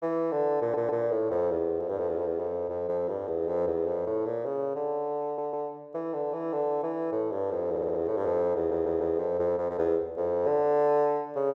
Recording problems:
audio stuttering; 4 times, first at 0.5 s

